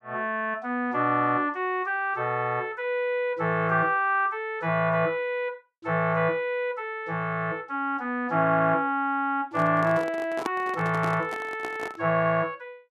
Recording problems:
handling noise; from 9.5 to 12 s; peak 0 dB vs average level

